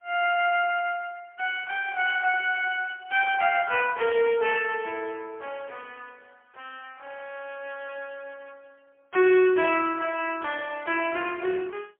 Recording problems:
telephone audio; 320 Hz to 3.2 kHz, AMR-NB, then MP3

